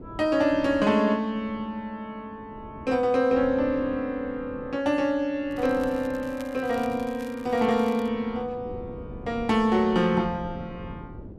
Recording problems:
wind noise; below 340 Hz, SNR 18 dB
crackling; from 5.5 to 8 s; loose cable, SNR 24 dB

